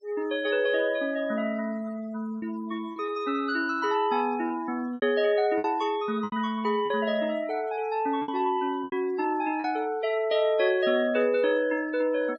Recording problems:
denoising artefacts; signal-to-artefact ratio 21 dB
lost packets; 5% of the sound replaced, filled with repeated pitch periods

